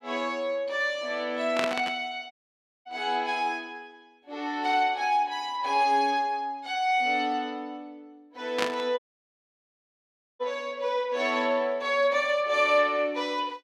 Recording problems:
static burst; at 1.5 s and at 8.5 s; peak +3 dB vs average level
audio cutting out; at 2.5 s for 0.5 s and at 9 s for 1.5 s

